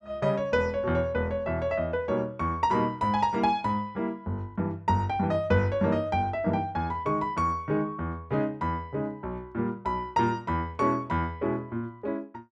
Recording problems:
none

